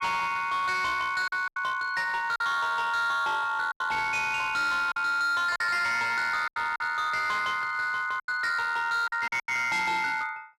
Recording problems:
distorted audio; hard clipping, signal-to-distortion ratio 11 dB
lost packets; 7% of the sound replaced, filled with silence

